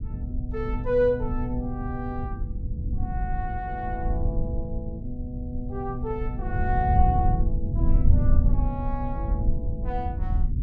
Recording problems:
low-frequency rumble; below 84 Hz, SNR -2 dB

